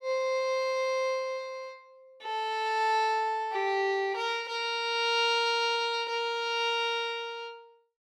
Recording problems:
none

